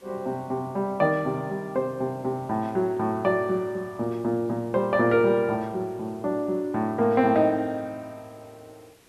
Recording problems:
background hiss; slope -3 dB per octave, SNR 30 dB

